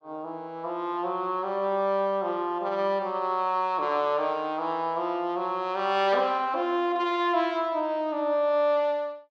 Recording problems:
none

